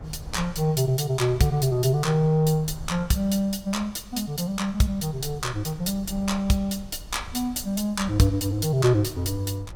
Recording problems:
rumble; below 98 Hz, SNR 19 dB

